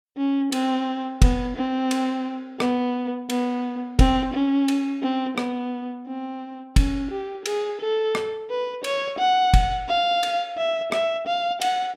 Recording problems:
none

